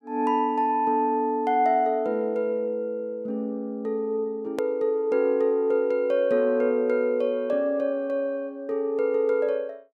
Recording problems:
click at an edit; at 4.5 s

